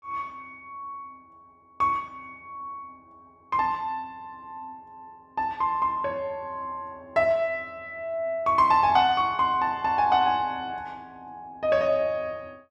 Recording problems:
none

